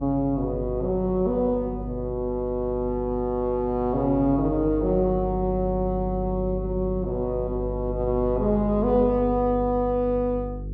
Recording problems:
electrical hum; 50 Hz, harmonics up to 500 Hz, SNR 9 dB

